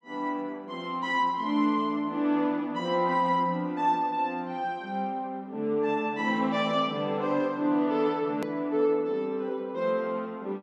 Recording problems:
hard cut with a click; at 8.5 s

